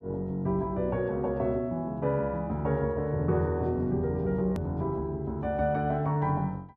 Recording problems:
edit click; at 4.5 s

